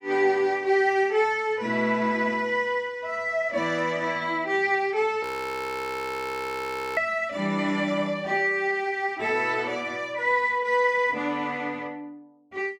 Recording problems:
audio freezing; at 5 s for 1.5 s

